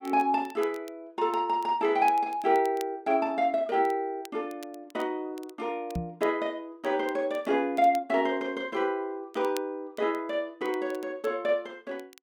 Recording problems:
crackling; vinyl, SNR 24 dB
microphone bump; at 6 s; peak -1 dB vs average level

